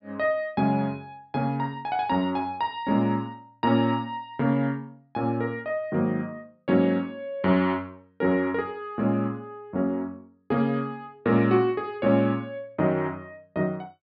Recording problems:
treble missing; nothing above 5.1 kHz

